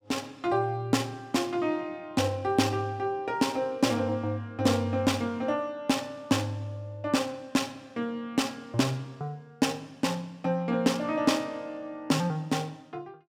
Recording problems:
none

